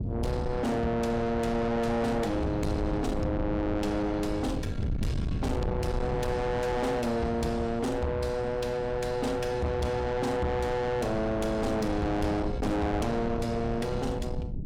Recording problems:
distortion; soft clipping, signal-to-distortion ratio 7 dB
rumble; below 230 Hz, SNR 6 dB

